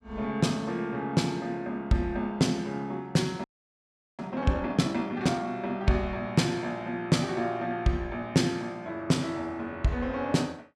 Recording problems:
frozen audio; at 3.5 s for 1 s

